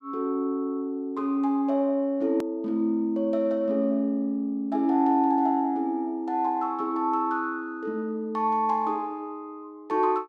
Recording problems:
edit click; at 2.5 s

